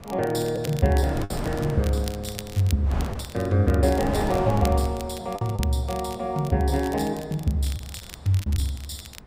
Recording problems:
wind on the microphone; below 590 Hz, SNR 10 dB
crackle; vinyl, SNR 17 dB
lost packets; 4% of the sound replaced, filled with the last packet

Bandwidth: 15.5 kHz